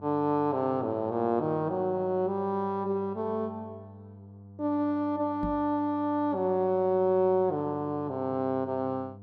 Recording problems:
hum; 50 Hz, harmonics up to 700 Hz, SNR 20 dB
knock on the microphone; at 5.5 s; peak -3 dB vs average level

